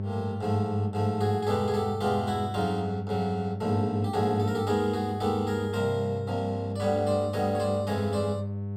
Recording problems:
hum; 50 Hz, harmonics up to 700 Hz, SNR 6 dB

